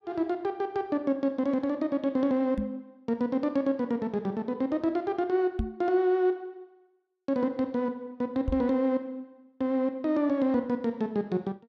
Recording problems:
microphone bump; at 2.5 s, at 5.5 s and at 8.5 s; peak +2 dB vs average level

